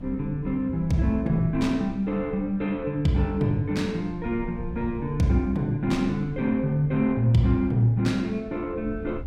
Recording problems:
electrical hum; 60 Hz, harmonics up to 300 Hz, SNR 24 dB
wind on the microphone; below 120 Hz, SNR 17 dB

